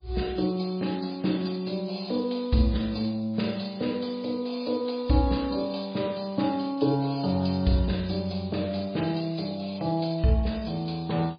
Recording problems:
lossy compression; MP3, log-spectral distance 7 dB, nothing above 4.2 kHz

